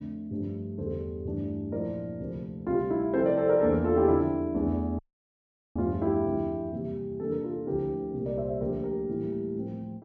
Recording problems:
dropout; at 5 s for 1 s

